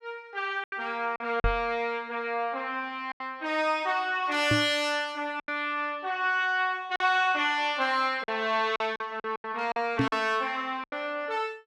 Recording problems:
packet loss; 7% of the sound replaced, filled with silence
microphone thump; at 1.5 s, at 4.5 s and at 10 s; peak +5 dB vs average level

